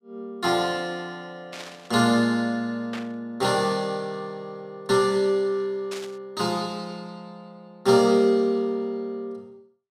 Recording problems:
static burst; at 1.5 s, at 3 s and at 6 s; peak -8 dB vs average level

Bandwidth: 15 kHz